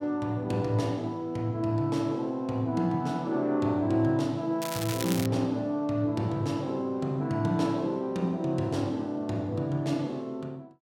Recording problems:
crackling; at 4.5 s; loose cable, SNR 8 dB

